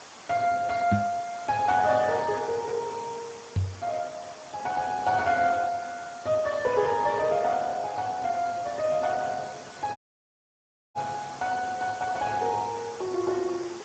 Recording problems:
codec artefacts; Speex, log-spectral distance 9 dB
background hiss; SNR 17 dB
microphone bump; at 1 s and at 3.5 s; peak +6 dB vs average level
audio cutting out; at 10 s for 1 s

